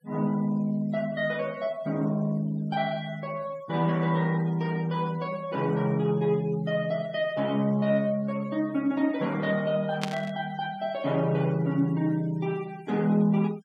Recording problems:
noise reduction artefacts; signal-to-artefact ratio 24 dB
static burst; at 10 s; peak 0 dB vs average level

